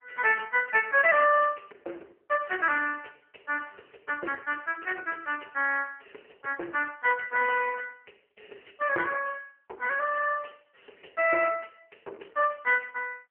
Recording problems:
telephone audio; 300 Hz to 2.8 kHz, AMR-NB

